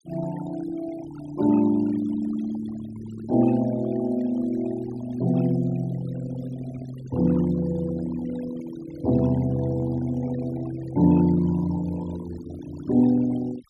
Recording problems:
noise reduction artefacts; signal-to-artefact ratio 18 dB

